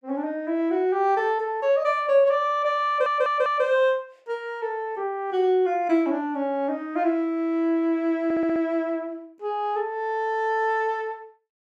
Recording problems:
audio stuttering; at 3 s and at 8 s

